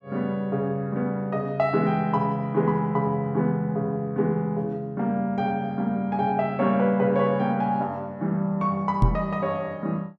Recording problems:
microphone thump; at 9 s; peak +8 dB vs average level

